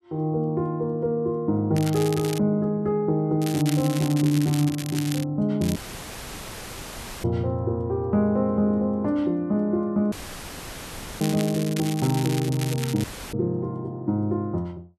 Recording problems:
crackle; 4 times, first at 2 s; loose cable, SNR 11 dB
dropout; at 6 s for 1.5 s, at 10 s for 1 s and at 13 s; filled with static

